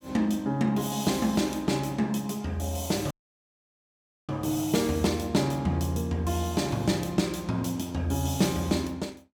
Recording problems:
audio cutting out; at 3 s for 1 s

